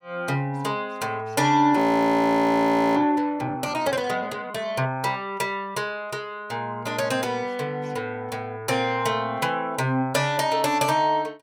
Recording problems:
audio freezing; at 2 s for 1 s

